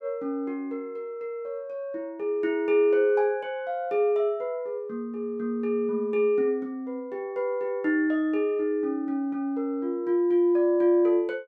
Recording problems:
none

